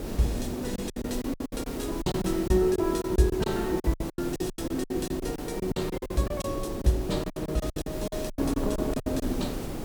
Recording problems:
hiss; slope -2 dB per octave, SNR 14 dB
wind noise; below 420 Hz, SNR 6 dB
lost packets; 17% of the sound replaced, filled with silence

